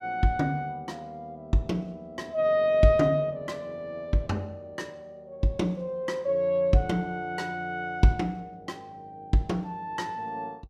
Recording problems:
none

